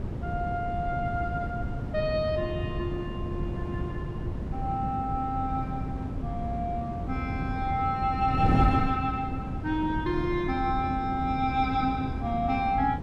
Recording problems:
wind noise; below 220 Hz, SNR 3 dB

